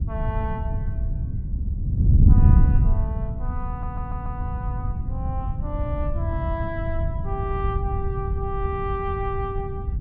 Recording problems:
wind on the microphone; below 110 Hz, SNR -8 dB
audio stuttering; at 3.5 s

